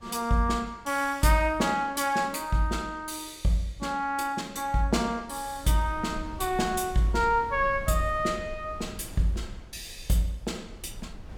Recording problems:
wind on the microphone; below 110 Hz, SNR 16 dB

